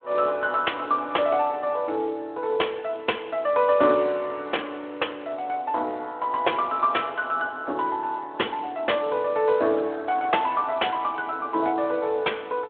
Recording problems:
telephone audio; 260 Hz to 3.5 kHz, Speex

